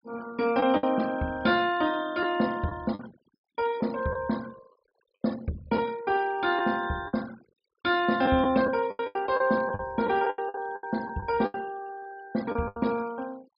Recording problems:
low-pass filter; nothing above 5.5 kHz
noise reduction artefacts; signal-to-artefact ratio 21 dB
lost packets; 8% of the sound replaced, filled with the last packet

